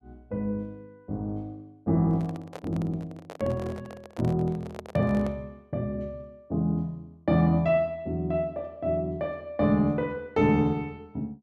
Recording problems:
handling noise; from 2 to 5.5 s; peak -7 dB vs average level

